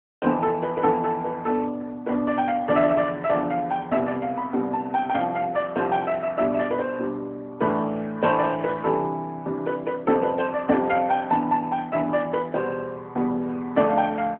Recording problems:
telephone audio; 170 Hz to 3.5 kHz, AMR-NB

